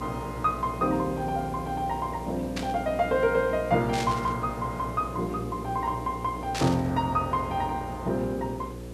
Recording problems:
electrical hum; 60 Hz, harmonics up to 540 Hz, SNR 11 dB
background hiss; slope -4 dB per octave, SNR 20 dB
static burst; at 2.5 s, at 4 s and at 6.5 s; peak -1 dB vs average level

